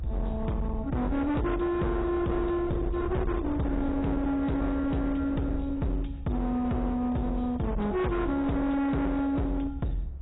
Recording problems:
lossy compression; AAC, log-spectral distance 3 dB, nothing above 3.8 kHz
distortion; hard clipping, signal-to-distortion ratio 7 dB
rumble; below 140 Hz, SNR 9 dB

